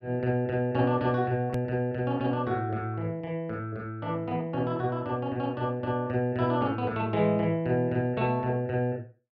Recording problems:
hard cut with a click; at 1.5 s

